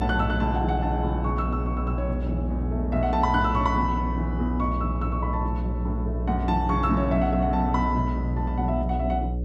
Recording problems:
hum; 60 Hz, harmonics up to 600 Hz, SNR 2 dB

